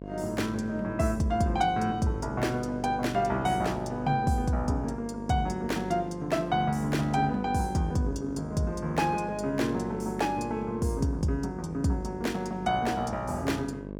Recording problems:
electrical hum; 50 Hz, harmonics up to 1.1 kHz, SNR 11 dB

